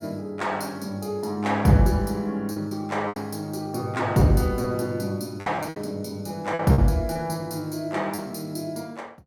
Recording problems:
packet loss; 6% of the sound replaced, filled with repeated pitch periods

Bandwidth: 17.5 kHz